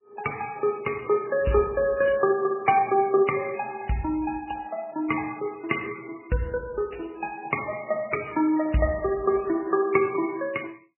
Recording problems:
codec artefacts; MP3, log-spectral distance 6 dB, nothing above 2.4 kHz

